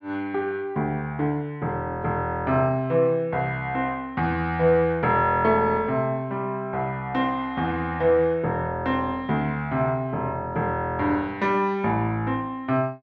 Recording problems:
none

